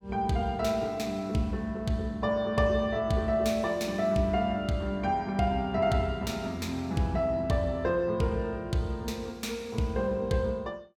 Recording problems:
none

